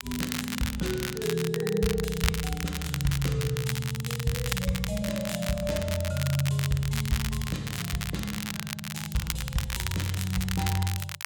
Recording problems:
crackle; vinyl, SNR 5 dB

